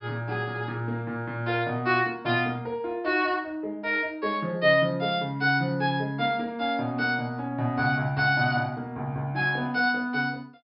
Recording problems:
low-pass filter; nothing above 5.5 kHz

